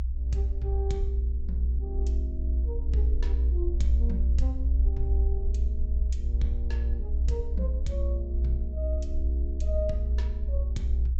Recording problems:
low-pass filter; nothing above 8 kHz
rumble; below 64 Hz, strongest tone 62 Hz, SNR -10 dB

